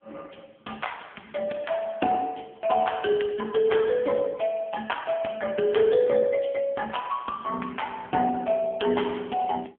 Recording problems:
telephone audio; 220 Hz to 3.4 kHz, AMR-NB

